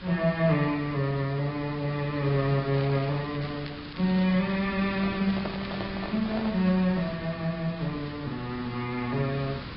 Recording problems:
treble cut off; nothing above 4.6 kHz
lossy compression; AAC, log-spectral distance 5 dB
background hiss; SNR 12 dB
crackling; from 2.5 to 6 s; loose cable, SNR 18 dB
handling noise; from 5 to 6.5 s; peak -4 dB vs average level

